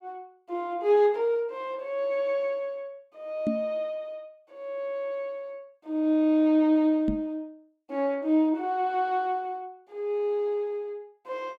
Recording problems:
microphone thump; at 3.5 s and at 7 s; peak +3 dB vs average level

